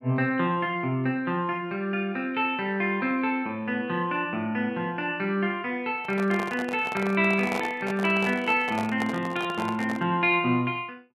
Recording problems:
handling noise; from 6 to 10 s; peak -2 dB vs average level

